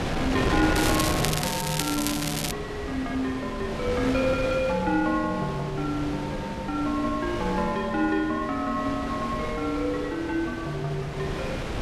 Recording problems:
wind noise; below 1.2 kHz, SNR 4 dB
crackle; from 1 to 2.5 s; loose cable, SNR 2 dB

